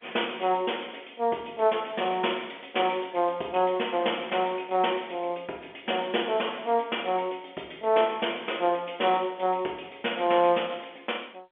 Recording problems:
telephone audio; 280 Hz to 3.4 kHz, G.711

